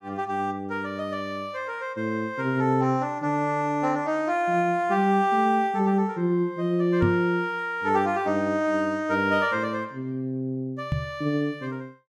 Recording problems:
knock on the microphone; at 7 s and at 11 s; peak +3 dB vs average level

